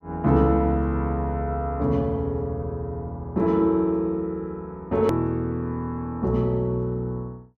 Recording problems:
click at an edit; at 5 s

